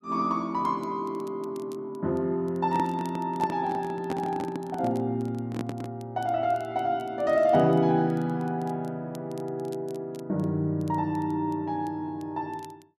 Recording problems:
crackle; vinyl, SNR 30 dB
microphone handling noise; from 2.5 to 6 s; peak 0 dB vs average level

